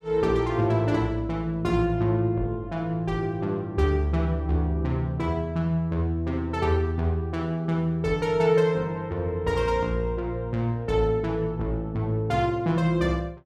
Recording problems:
none

